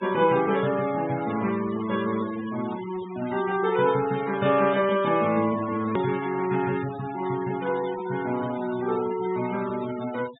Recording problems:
treble missing; nothing above 4 kHz
denoising artefacts; signal-to-artefact ratio 15 dB
click at an edit; at 6 s

